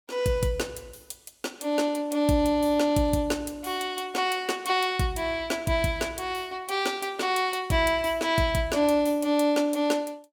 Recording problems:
none

